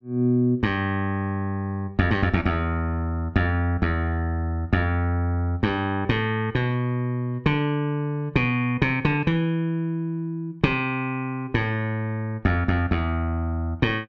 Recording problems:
none

